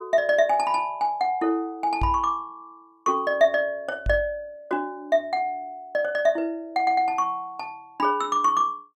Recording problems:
microphone bump; at 2 s and at 4 s; peak 0 dB vs average level

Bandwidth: 15 kHz